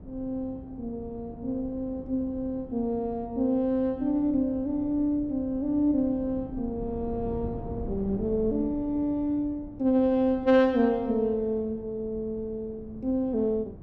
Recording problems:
wind on the microphone; below 260 Hz, SNR 15 dB

